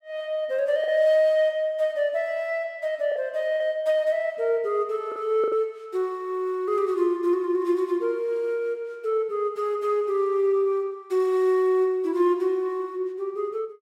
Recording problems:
packet loss; 1.8% of the sound replaced, filled with the last packet

